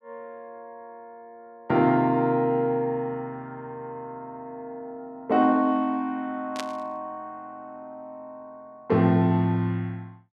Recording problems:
burst of static; at 6.5 s; peak -5 dB vs average level

